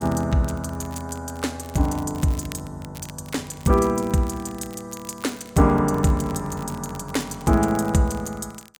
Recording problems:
crackling; vinyl, SNR 21 dB

